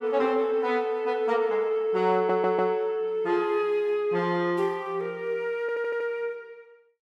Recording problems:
audio stuttering; at 2 s and at 5.5 s

